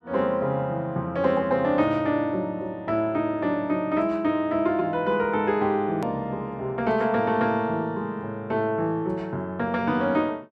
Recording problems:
edit click; at 6 s

